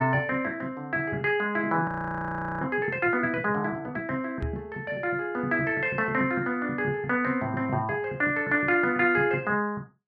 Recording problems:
audio freezing; at 2 s for 0.5 s
knock on the microphone; at 4.5 s; peak -2 dB vs average level

